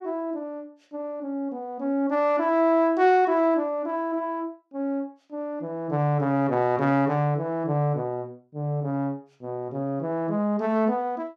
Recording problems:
none

